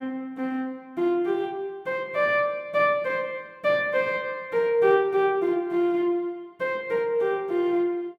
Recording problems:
none

